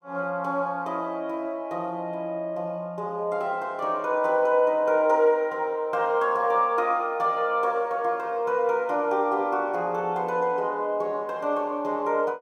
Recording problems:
none

